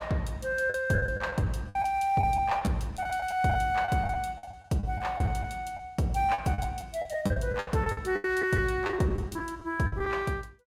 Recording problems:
packet loss; 13% of the sound replaced, filled with the last packet

